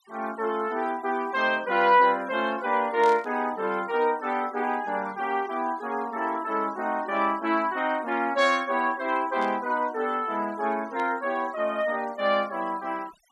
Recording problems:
denoising artefacts; signal-to-artefact ratio 23 dB
burst of static; at 3 s, at 9.5 s and at 11 s; peak -11 dB vs average level

